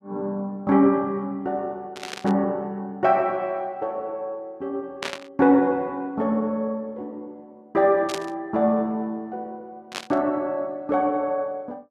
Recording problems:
burst of static; 4 times, first at 2 s; peak -1 dB vs average level

